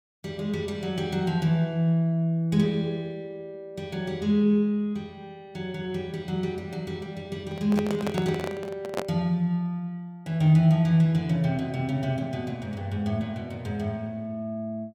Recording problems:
microphone handling noise; from 7.5 to 9 s; peak 0 dB vs average level

